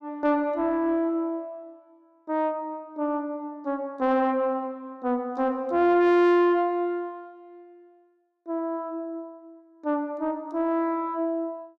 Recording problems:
distortion; soft clipping, signal-to-distortion ratio 10 dB

